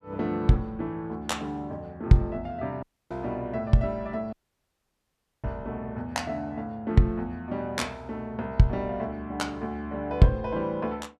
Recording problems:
dropout; at 3 s and at 4.5 s for 1 s

